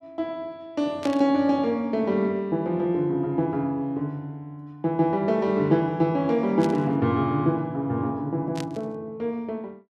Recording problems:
static burst; at 1 s, at 6.5 s and at 8.5 s; peak -7 dB vs average level

